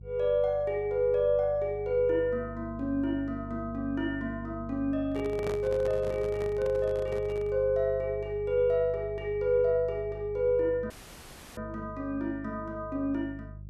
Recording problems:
hum; 50 Hz, harmonics up to 350 Hz, SNR 14 dB
handling noise; from 5 to 7.5 s; peak -3 dB vs average level
audio cutting out; at 11 s for 0.5 s

